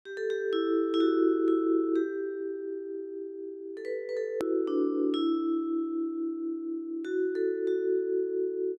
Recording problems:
edit click; at 4.5 s

